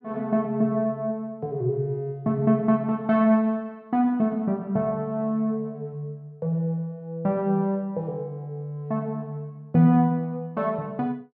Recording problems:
none

